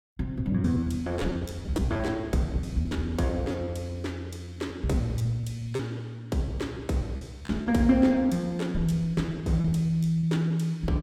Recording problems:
packet loss; 15% of the sound replaced, filled with repeated pitch periods

